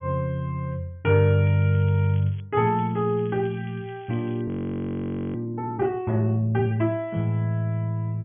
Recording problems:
treble cut off; nothing above 3.4 kHz
crackling; at 1.5 s, at 2 s and from 2.5 to 4.5 s; loose cable, SNR 29 dB
frozen audio; at 4.5 s for 1 s

